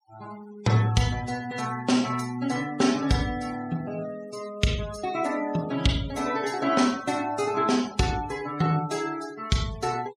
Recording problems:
noise reduction artefacts; signal-to-artefact ratio 17 dB

